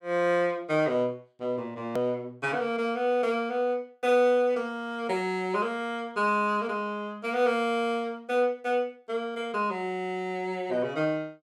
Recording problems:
edit click; at 2 s

